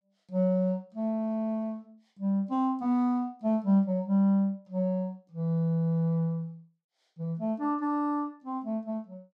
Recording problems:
none

